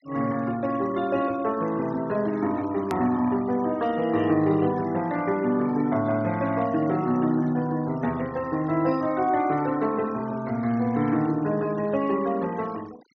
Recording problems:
treble missing; nothing above 6.4 kHz
noise reduction artefacts; signal-to-artefact ratio 21 dB
edit click; at 3 s

